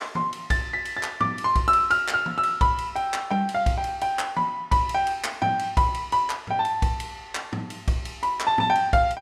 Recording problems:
none

